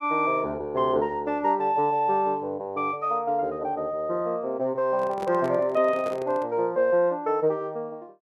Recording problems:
microphone handling noise; from 5 to 6.5 s; peak -7 dB vs average level

